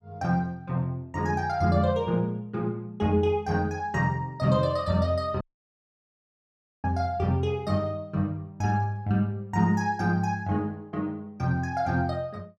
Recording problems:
audio cutting out; at 5.5 s for 1.5 s

